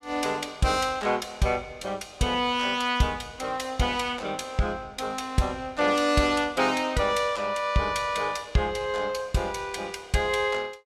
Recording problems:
none

